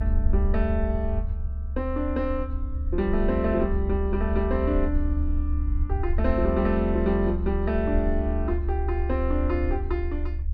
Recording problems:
low-frequency rumble; below 72 Hz, SNR 1 dB

